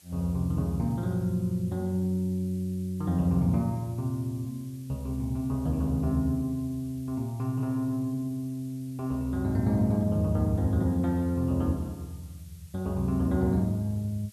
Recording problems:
background hiss; SNR 26 dB

